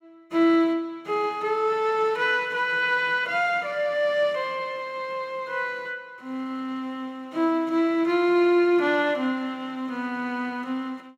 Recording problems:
none

